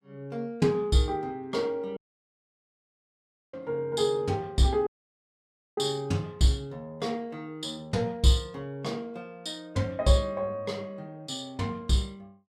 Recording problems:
dropout; at 2 s for 1.5 s and at 5 s for 1 s

